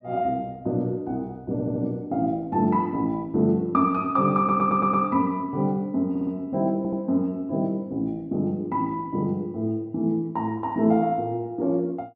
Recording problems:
audio stuttering; 4 times, first at 1.5 s

